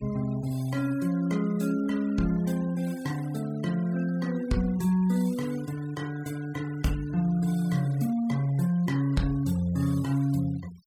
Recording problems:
noise reduction artefacts; signal-to-artefact ratio 22 dB

